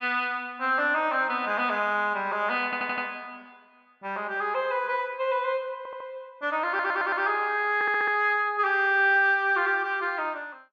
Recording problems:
stutter; 4 times, first at 2.5 s

